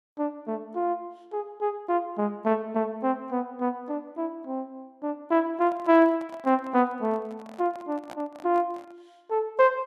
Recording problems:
handling noise; from 5.5 to 9 s; peak -9 dB vs average level

